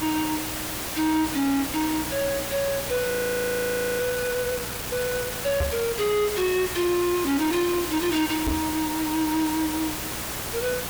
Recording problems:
distortion; soft clipping, signal-to-distortion ratio 8 dB
hum; 60 Hz, harmonics up to 1 kHz, SNR 21 dB
background hiss; SNR 5 dB
frozen audio; at 3 s for 1 s
knock on the microphone; at 5.5 s and at 8.5 s; peak +4 dB vs average level

